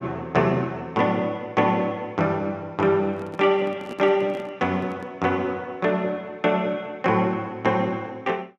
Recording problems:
handling noise; from 3 to 5 s; peak -8 dB vs average level

